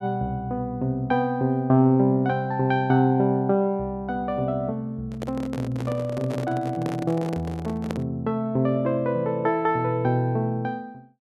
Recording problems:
microphone handling noise; from 5 to 8 s; peak -3 dB vs average level

